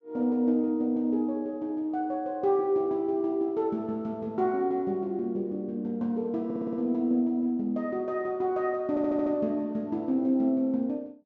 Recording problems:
treble cut off; nothing above 8 kHz
audio stuttering; at 6.5 s and at 9 s

